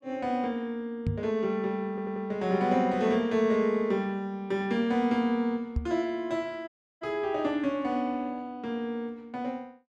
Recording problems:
knock on the microphone; at 1 s and at 6 s; peak +3 dB vs average level
audio stuttering; at 2 s
audio cutting out; at 6.5 s

